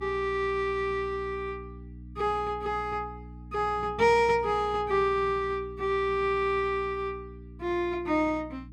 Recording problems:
hum; 60 Hz, harmonics up to 300 Hz, SNR 17 dB

